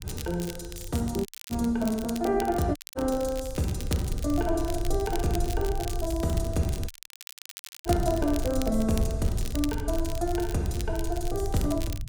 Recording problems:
rumble; below 74 Hz, SNR 7 dB
crackle; vinyl, SNR 13 dB
dropout; at 1.5 s, at 3 s and at 7 s for 1 s

